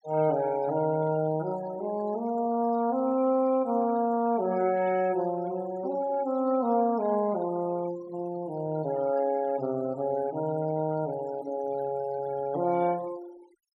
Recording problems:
denoising artefacts; signal-to-artefact ratio 21 dB

